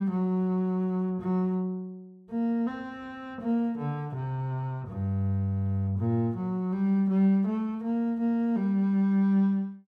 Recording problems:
none

